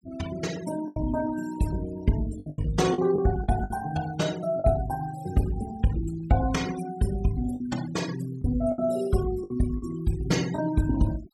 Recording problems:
noise reduction artefacts; signal-to-artefact ratio 16 dB
packet loss; 6% of the sound replaced, filled with the last packet

